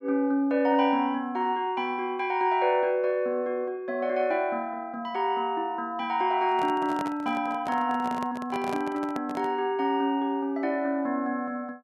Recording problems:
microphone handling noise; from 6.5 to 9.5 s; peak -4 dB vs average level

